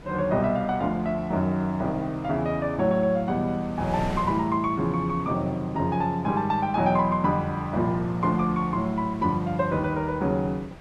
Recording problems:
wind noise; below 920 Hz, SNR 18 dB

